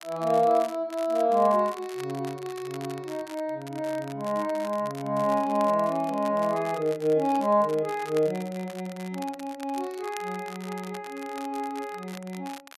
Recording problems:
crackle; vinyl, SNR 19 dB

